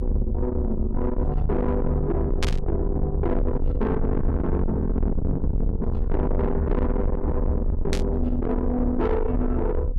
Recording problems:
distorted audio; soft clipping, signal-to-distortion ratio 8 dB
rumble; below 84 Hz, SNR 1 dB
static burst; at 2.5 s and at 8 s; peak +1 dB vs average level

